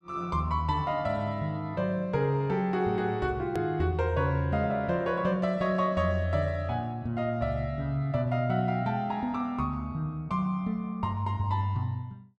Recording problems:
hard cut with a click; at 3.5 s

